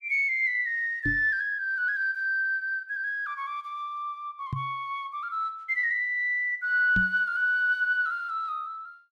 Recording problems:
knock on the microphone; at 1 s, at 4.5 s and at 7 s; peak -1 dB vs average level

